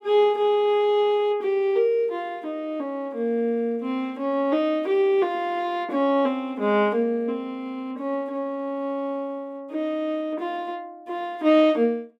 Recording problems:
none

